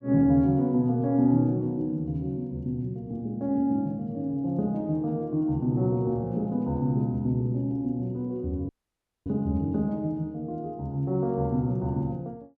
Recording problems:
dropout; at 8.5 s for 0.5 s

